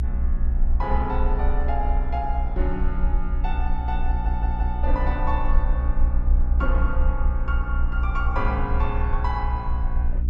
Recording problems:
hum; 60 Hz, harmonics up to 420 Hz, SNR 6 dB
rumble; below 62 Hz, SNR -5 dB
audio stuttering; at 4 s

